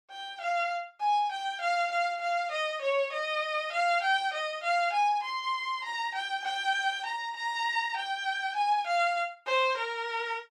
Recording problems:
none

